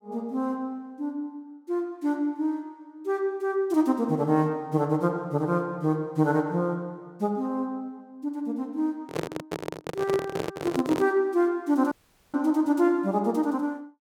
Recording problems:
microphone handling noise; from 9 to 11 s; peak +1 dB vs average level
dropout; at 12 s

